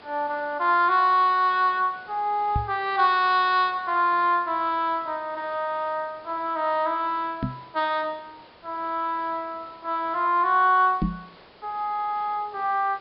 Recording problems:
treble cut off; nothing above 5.1 kHz
background hiss; SNR 26 dB
knock on the microphone; at 2.5 s, at 7.5 s and at 11 s; peak +2 dB vs average level
stutter; at 12 s

